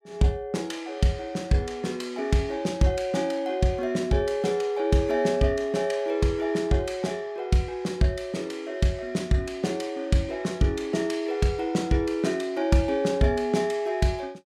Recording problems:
none

